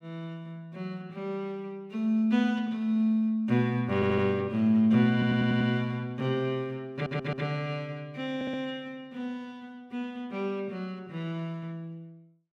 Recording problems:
audio stuttering; 4 times, first at 4 s

